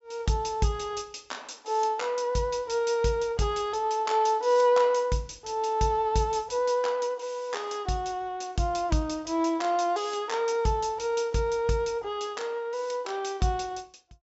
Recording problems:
treble missing; nothing above 8 kHz

